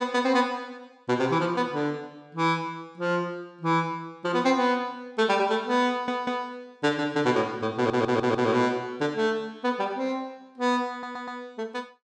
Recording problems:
audio stuttering; at 6 s, at 8 s and at 11 s

